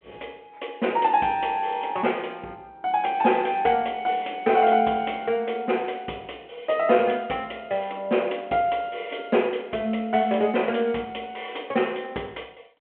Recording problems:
phone line; 260 Hz to 3.3 kHz, G.726

